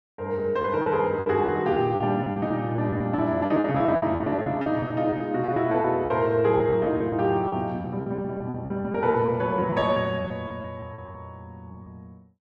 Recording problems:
lost packets; 14% of the sound replaced, filled with repeated pitch periods

